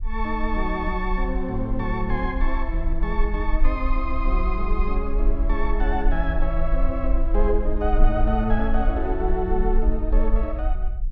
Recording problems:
rumble; below 42 Hz, strongest tone 22 Hz, SNR 0 dB

